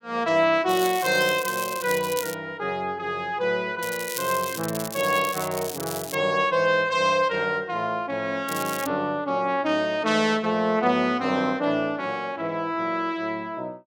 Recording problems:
crackling; from 0.5 to 2.5 s, from 4 to 6 s and at 8.5 s; loose cable, SNR 10 dB

